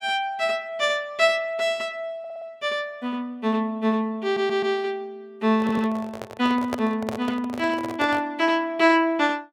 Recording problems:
audio stuttering; at 2 s, at 4 s and at 5.5 s
microphone handling noise; from 5.5 to 8.5 s; peak -1 dB vs average level

